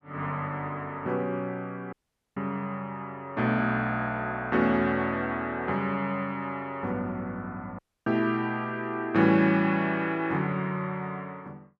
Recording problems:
dropout; at 2 s and at 8 s

